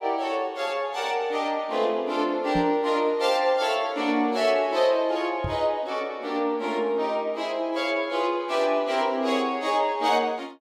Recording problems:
microphone bump; at 2.5 s and at 5.5 s; peak -3 dB vs average level

